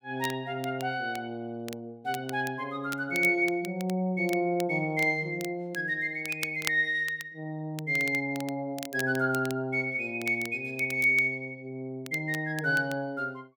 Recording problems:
crackling; vinyl, SNR 15 dB

